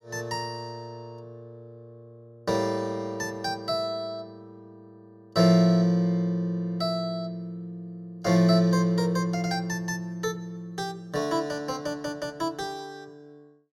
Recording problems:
none

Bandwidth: 16 kHz